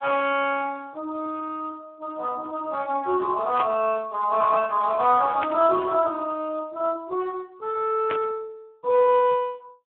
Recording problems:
phone line; 240 Hz to 3.7 kHz, Speex
static burst; at 3.5 s, at 5.5 s and at 8 s; peak -2 dB vs average level

